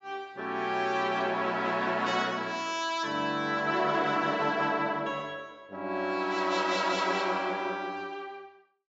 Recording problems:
treble missing; nothing above 8 kHz

